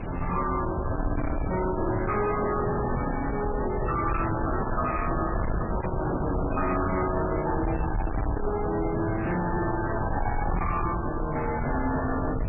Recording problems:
lossy compression; MP3, log-spectral distance 5 dB, nothing above 2.5 kHz
distortion; soft clipping, signal-to-distortion ratio 7 dB
low-frequency rumble; below 250 Hz, SNR 5 dB
wind noise; below 850 Hz, SNR 7 dB

